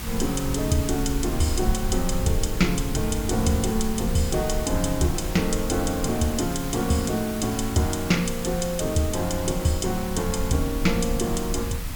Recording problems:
background hiss; slope -1 dB per octave, SNR 10 dB
rumble; below 66 Hz, SNR 8 dB

